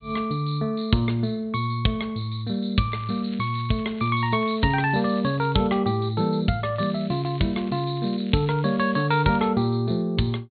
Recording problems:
low-pass filter; nothing above 4.4 kHz
crackling; from 3 to 5.5 s and from 6.5 to 9.5 s; loose cable, SNR 24 dB

